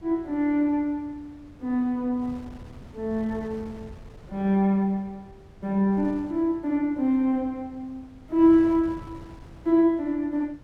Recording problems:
wind noise; below 300 Hz, SNR 22 dB

